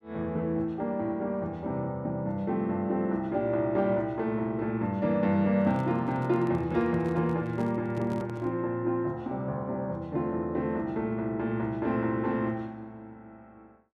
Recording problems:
microphone handling noise; from 5.5 to 8.5 s; peak -7 dB vs average level

